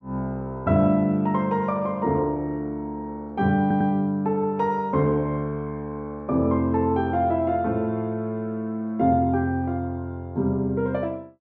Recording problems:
audio stuttering; at 3.5 s

